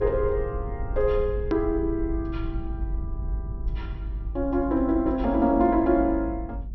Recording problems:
treble cut off; nothing above 6 kHz
low-frequency rumble; below 64 Hz, strongest tone 50 Hz, SNR 8 dB
hard cut with a click; at 1.5 s

